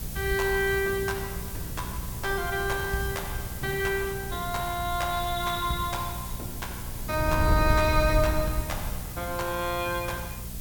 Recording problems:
hum; 60 Hz, harmonics up to 480 Hz, SNR 13 dB
background hiss; slope +1 dB per octave, SNR 10 dB
wind noise; below 110 Hz, SNR 6 dB

